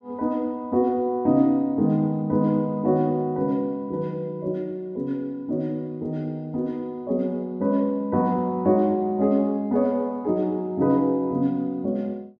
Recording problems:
none

